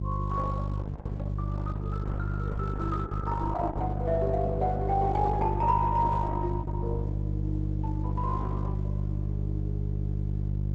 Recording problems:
lossy codec; Opus, log-spectral distance 2 dB, nothing above 7.8 kHz
electrical hum; 50 Hz, harmonics up to 400 Hz, SNR 0 dB

